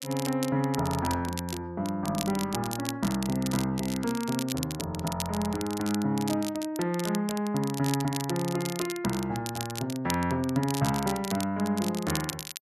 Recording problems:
crackle; vinyl, SNR 9 dB

